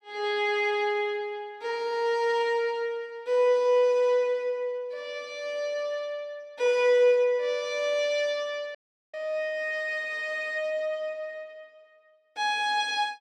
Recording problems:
dropout; at 9 s

